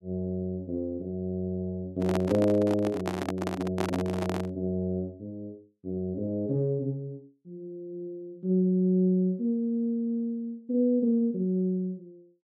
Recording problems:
microphone handling noise; from 2 to 4.5 s; peak +1 dB vs average level

